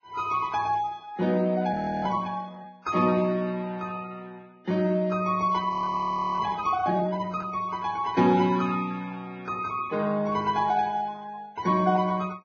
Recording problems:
lossy compression; Vorbis, log-spectral distance 3 dB, nothing above 6.2 kHz
audio freezing; at 1.5 s and at 5.5 s for 0.5 s

